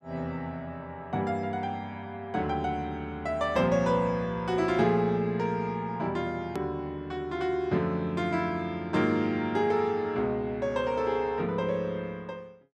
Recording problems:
hard cut with a click; at 6.5 s

